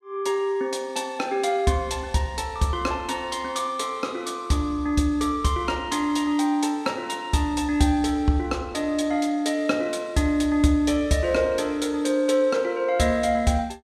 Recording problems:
none

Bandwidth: 14 kHz